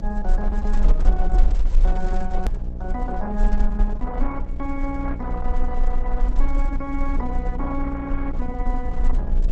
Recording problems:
lossy codec; Opus, log-spectral distance 2 dB
hum; 60 Hz, harmonics up to 660 Hz, SNR 4 dB
rumble; below 36 Hz, strongest tone 20 Hz, SNR -4 dB
edit click; at 2.5 s

